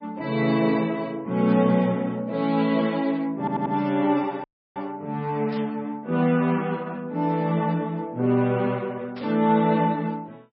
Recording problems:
codec artefacts; MP3, log-spectral distance 2 dB
burst of static; at 1.5 s, at 5.5 s and at 9 s; peak -15 dB vs average level
stutter; at 3.5 s
dropout; at 4.5 s

